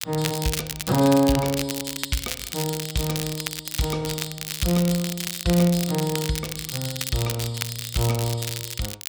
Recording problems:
crackle; vinyl, SNR 5 dB

